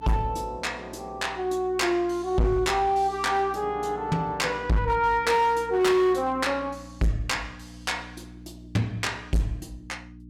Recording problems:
distorted audio; hard clipping, signal-to-distortion ratio 7 dB
hum; 60 Hz, harmonics up to 300 Hz, SNR 20 dB

